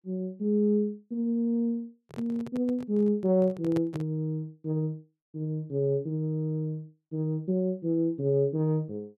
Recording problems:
handling noise; from 2 to 4 s; peak -3 dB vs average level

